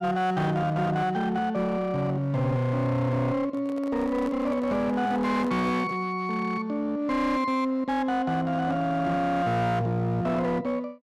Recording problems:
distortion; hard clipping, signal-to-distortion ratio 11 dB
microphone handling noise; from 3.5 to 6 s; peak -10 dB vs average level

